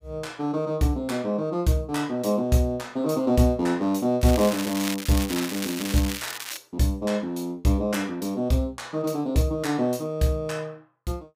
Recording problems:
crackling; from 4 to 6.5 s; loose cable, SNR 7 dB

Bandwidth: 15.5 kHz